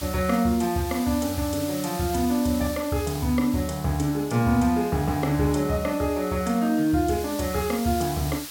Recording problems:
hiss; slope +2 dB per octave, SNR 13 dB

